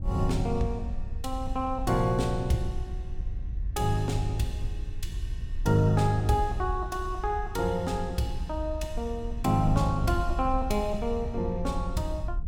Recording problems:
wind noise; below 68 Hz, SNR 7 dB

